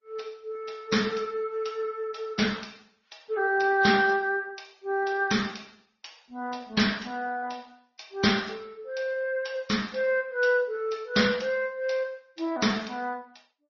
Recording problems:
lossy compression; MP3, then Opus, log-spectral distance 6 dB, nothing above 5.8 kHz

